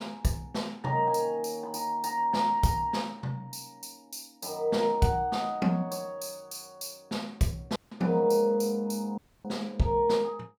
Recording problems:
dropout; at 8 s and at 9 s

